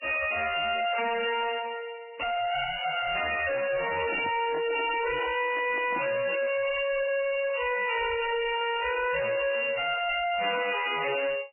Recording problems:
lossy codec; MP3, log-spectral distance 10 dB, nothing above 2.5 kHz
distortion; hard clipping, signal-to-distortion ratio 4 dB
microphone handling noise; from 4 to 6.5 s; peak -1 dB vs average level

